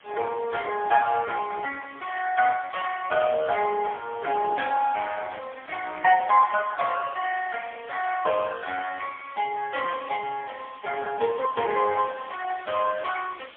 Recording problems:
phone line; 300 Hz to 2.9 kHz, AMR-NB, then MP3
hiss; SNR 25 dB

